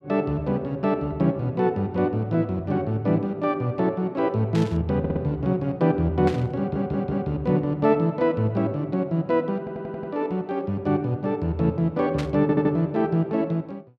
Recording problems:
burst of static; at 4.5 s, at 6.5 s and at 12 s; peak -6 dB vs average level
stutter; 4 times, first at 5 s

